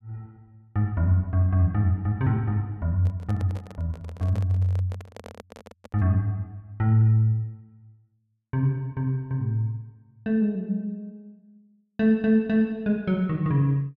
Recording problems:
microphone handling noise; from 3 to 6 s; peak -12 dB vs average level

